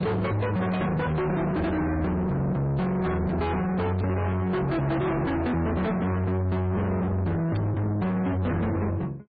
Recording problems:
treble cut off; nothing above 4.6 kHz
codec artefacts; MP3, log-spectral distance 2 dB
distortion; soft clipping, signal-to-distortion ratio 5 dB
static burst; at 1 s, at 4 s and at 7.5 s; peak -14 dB vs average level

